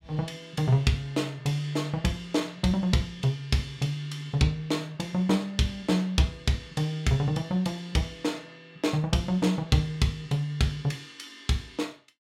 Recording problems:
none

